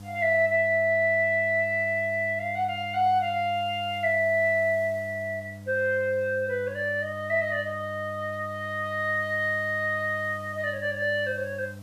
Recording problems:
hum; 50 Hz, harmonics up to 800 Hz, SNR 17 dB
background hiss; SNR 30 dB

